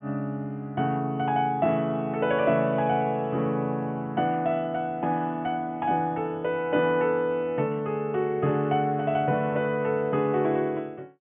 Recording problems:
treble missing; nothing above 3.4 kHz

